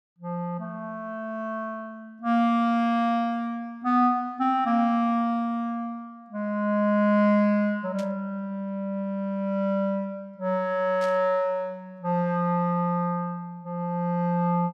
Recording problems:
static burst; at 8 s and at 11 s; peak -12 dB vs average level

